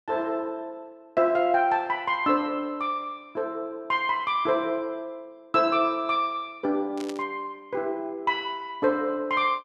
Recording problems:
static burst; at 7 s; peak -9 dB vs average level

